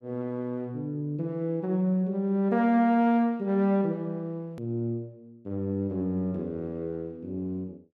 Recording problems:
hard cut with a click; at 4.5 s

